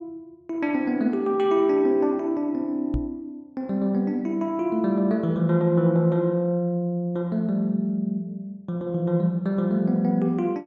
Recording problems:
knock on the microphone; at 3 s; peak -1 dB vs average level

